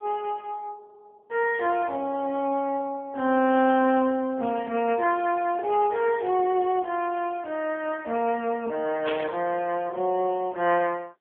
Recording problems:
telephone audio; 190 Hz to 3.3 kHz, AMR-NB
static burst; at 9 s; peak -3 dB vs average level

